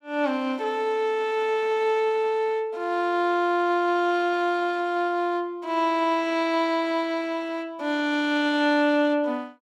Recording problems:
none

